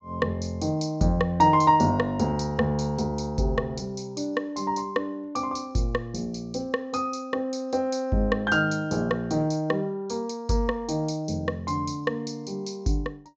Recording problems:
treble missing; nothing above 8 kHz

